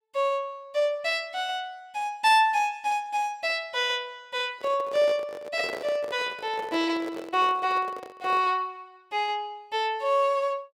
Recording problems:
handling noise; from 4.5 to 8.5 s; peak -6 dB vs average level

